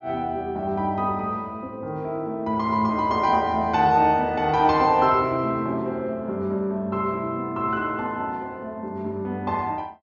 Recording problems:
treble missing; nothing above 7.3 kHz

